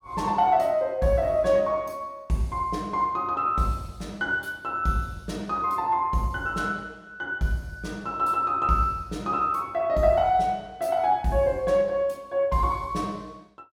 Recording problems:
none

